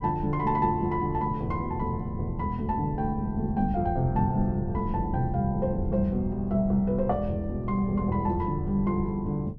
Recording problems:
rumble; below 110 Hz, SNR 11 dB

